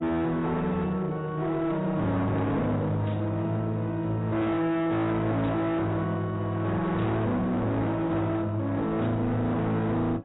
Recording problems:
codec artefacts; AAC, log-spectral distance 2 dB, nothing above 3.8 kHz
distortion; hard clipping, signal-to-distortion ratio 7 dB
burst of static; 4 times, first at 3 s; peak -16 dB vs average level

